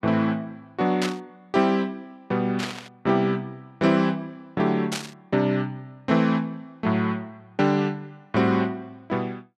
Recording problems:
burst of static; at 1 s, at 2.5 s and at 5 s; peak -1 dB vs average level

